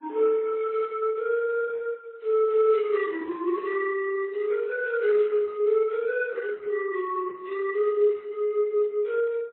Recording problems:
lossy compression; Opus, then MP3, log-spectral distance 2 dB, nothing above 10.7 kHz

